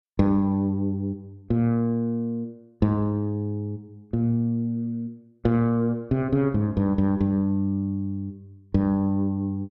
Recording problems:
none

